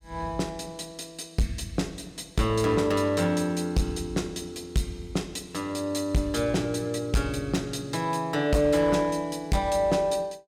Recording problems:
distortion; hard clipping, uneven, signal-to-distortion ratio 10 dB

